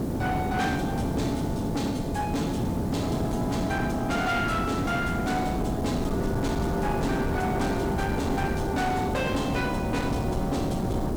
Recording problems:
distorted audio; hard clipping, uneven, signal-to-distortion ratio 10 dB
background hiss; SNR 0 dB
low-frequency rumble; below 130 Hz, SNR 10 dB

